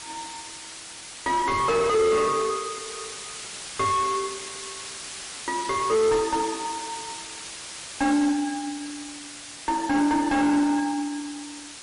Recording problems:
lossy compression; MP3, log-spectral distance 15 dB, nothing above 10.4 kHz
distortion; soft clipping, signal-to-distortion ratio 6 dB
background hiss; slope +1 dB per octave, SNR 11 dB

